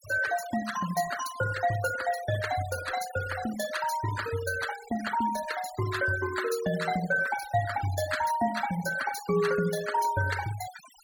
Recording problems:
noise reduction artefacts; signal-to-artefact ratio 12 dB

